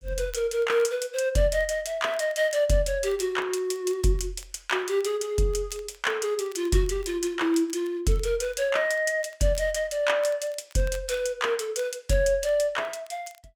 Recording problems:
crackling; vinyl, SNR 28 dB

